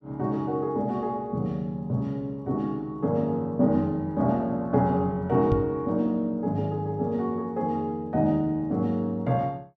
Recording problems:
microphone thump; at 5.5 s; peak +3 dB vs average level

